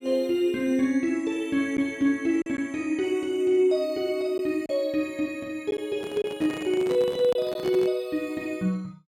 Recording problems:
lost packets; 1.9% of the sound replaced, filled with silence
microphone handling noise; from 6 to 8 s; peak -4 dB vs average level

